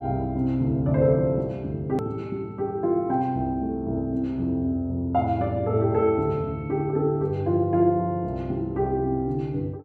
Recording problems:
edit click; at 2 s

